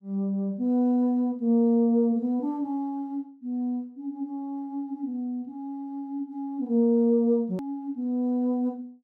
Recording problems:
hard cut with a click; at 7.5 s

